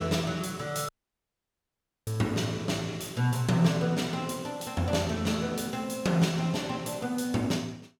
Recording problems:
audio cutting out; at 1 s for 1 s

